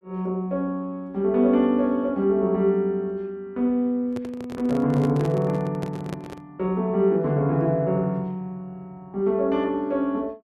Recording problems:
handling noise; from 4 to 6.5 s; peak -6 dB vs average level

